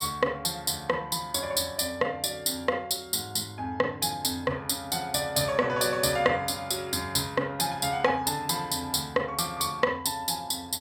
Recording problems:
none

